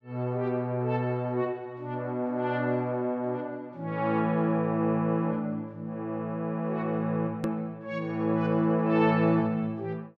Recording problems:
edit click; at 7.5 s

